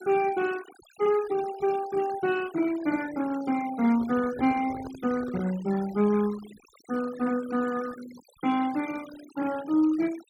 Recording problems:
denoising artefacts; signal-to-artefact ratio 18 dB
microphone handling noise; from 4 to 5.5 s; peak -9 dB vs average level

